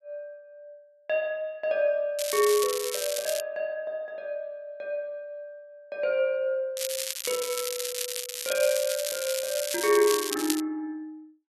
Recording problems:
crackle; from 2 to 3.5 s and from 7 to 11 s; loose cable, SNR 3 dB

